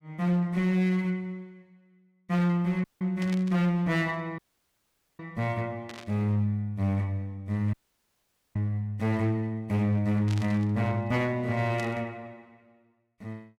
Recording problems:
distortion; hard clipping, uneven, signal-to-distortion ratio 10 dB
dropout; at 3 s, at 4.5 s for 1 s and at 7.5 s for 1 s
burst of static; 4 times, first at 3 s; peak -9 dB vs average level

